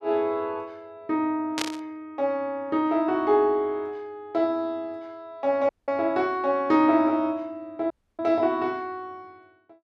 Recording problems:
static burst; at 1.5 s; peak +1 dB vs average level
audio cutting out; at 5.5 s and at 8 s

